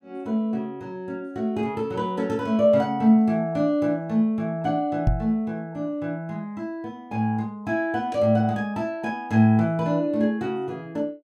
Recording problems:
microphone bump; at 5 s; peak +6 dB vs average level

